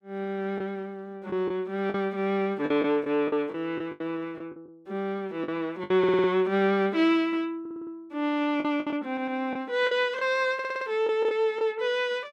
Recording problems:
lost packets; 7% of the sound replaced, filled with the last packet
stutter; 4 times, first at 6 s

